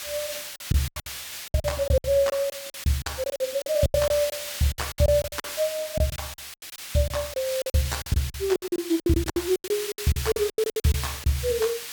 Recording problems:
background hiss; SNR 8 dB
lost packets; 19% of the sound replaced, filled with silence

